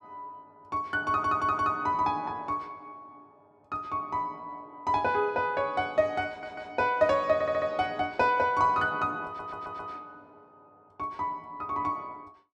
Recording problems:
stutter; 4 times, first at 1 s

